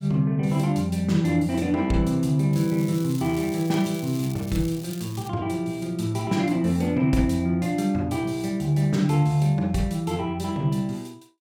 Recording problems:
crackle; from 2.5 to 5.5 s; loose cable, SNR 18 dB

